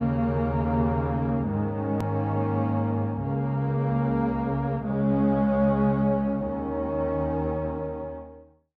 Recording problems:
edit click; at 2 s

